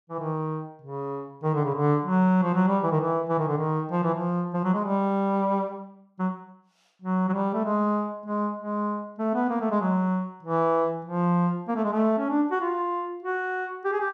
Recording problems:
none

